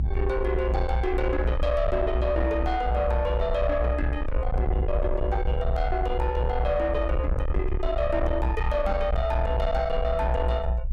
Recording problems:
distorted audio; soft clipping, signal-to-distortion ratio 8 dB
rumble; below 82 Hz, SNR 1 dB

